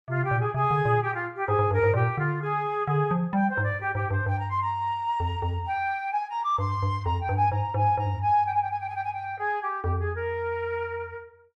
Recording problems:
none

